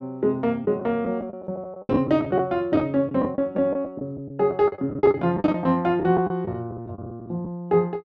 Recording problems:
lost packets; 12% of the sound replaced, filled with the last packet

